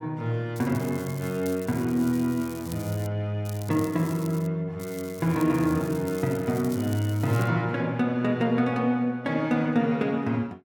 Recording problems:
crackling; from 0.5 to 3 s, from 3.5 to 4.5 s and from 5 to 7.5 s; loose cable, SNR 18 dB

